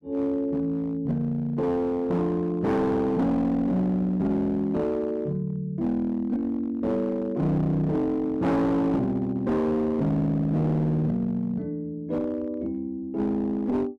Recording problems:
distortion; hard clipping, uneven, signal-to-distortion ratio 10 dB

